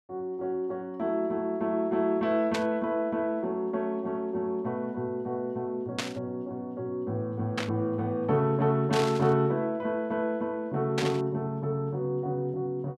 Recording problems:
static burst; 5 times, first at 2.5 s; peak +3 dB vs average level

